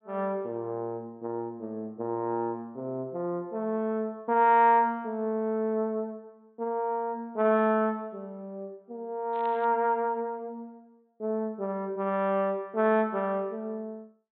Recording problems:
treble cut off; nothing above 4 kHz
crackle; at 9.5 s; loose cable, SNR 27 dB

